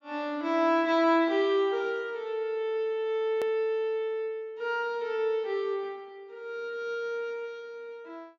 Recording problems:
treble missing; nothing above 7.3 kHz
edit click; at 3.5 s

